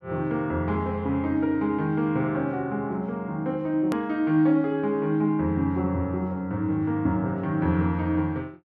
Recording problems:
click at an edit; at 4 s

